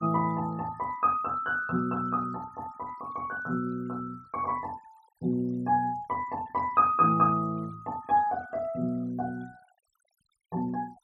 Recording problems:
denoising artefacts; signal-to-artefact ratio 26 dB

